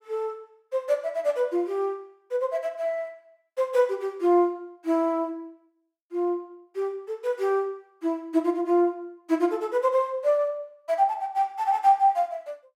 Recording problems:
none

